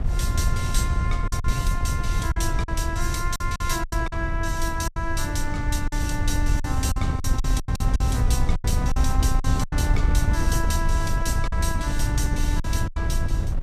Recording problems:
wind noise; below 88 Hz, SNR -4 dB
packet loss; 9% of the sound replaced, filled with silence

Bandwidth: 14.5 kHz